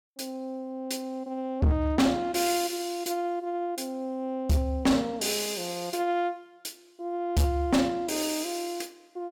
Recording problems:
distorted audio; hard clipping, signal-to-distortion ratio 7 dB

